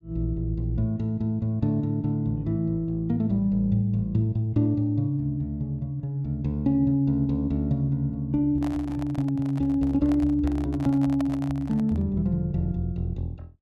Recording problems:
microphone handling noise; from 8.5 to 12 s; peak -7 dB vs average level

